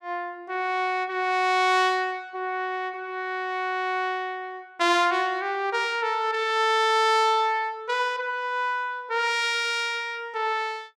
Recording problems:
none

